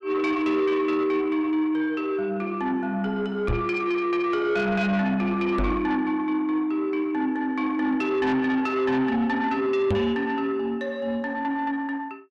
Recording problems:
distorted audio; soft clipping, signal-to-distortion ratio 11 dB
knock on the microphone; at 3.5 s, at 5.5 s and at 10 s; peak +3 dB vs average level

